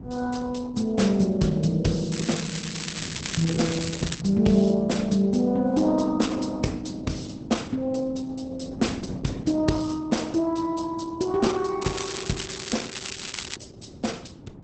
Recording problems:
lossy compression; Opus, log-spectral distance 7 dB, nothing above 8 kHz
wind noise; below 300 Hz, SNR 15 dB
crackling; from 2 to 4 s and from 12 to 14 s; loose cable, SNR 7 dB

